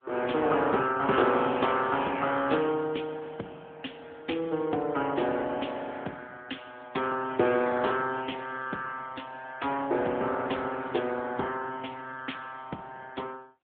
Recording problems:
telephone audio; 280 Hz to 3.5 kHz, AMR-NB

